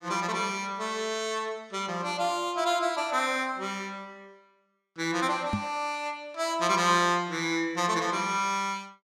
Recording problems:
microphone bump; at 5.5 s; peak +2 dB vs average level

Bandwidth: 16 kHz